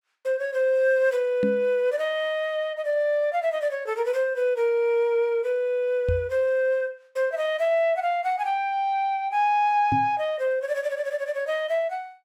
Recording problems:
microphone bump; at 1.5 s, at 6 s and at 10 s; peak 0 dB vs average level

